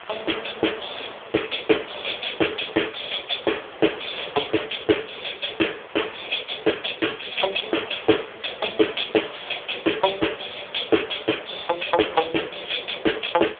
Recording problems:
telephone audio; 320 Hz to 3.6 kHz, AMR-NB
background hiss; SNR 17 dB
wind on the microphone; below 1.6 kHz, SNR 19 dB

